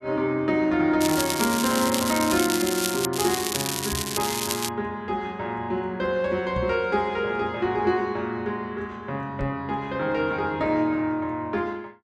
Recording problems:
crackle; from 1 to 3 s and from 3 to 4.5 s; loose cable, SNR 2 dB
microphone bump; at 4 s, at 6.5 s and at 9.5 s; peak -2 dB vs average level

